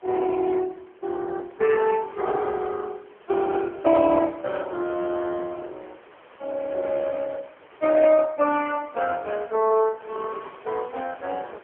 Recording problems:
phone line; 300 Hz to 3.3 kHz, AMR-NB
wind on the microphone; below 1.8 kHz, SNR 24 dB

